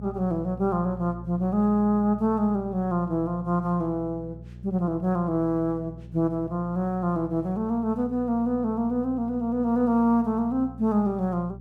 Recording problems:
hum; 60 Hz, harmonics up to 420 Hz, SNR 16 dB

